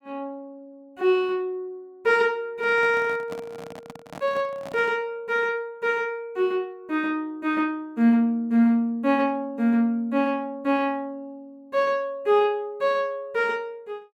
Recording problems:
microphone handling noise; from 2.5 to 5 s; peak -10 dB vs average level

